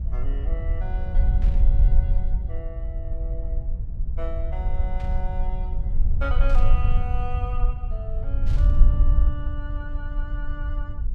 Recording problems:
rumble; below 54 Hz, strongest tone 20 Hz, SNR -13 dB
burst of static; 4 times, first at 1.5 s; peak -6 dB vs average level

